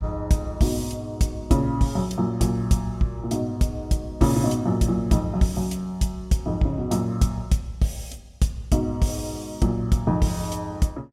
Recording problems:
none

